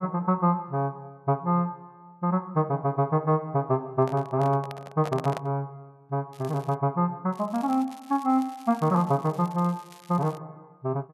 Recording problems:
microphone handling noise; from 4 to 5.5 s; peak -4 dB vs average level
crackle; at 6.5 s and from 7.5 to 10 s; loose cable, SNR 25 dB

